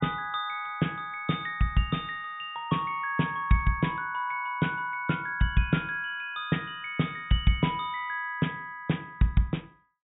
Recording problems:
treble cut off; nothing above 4 kHz

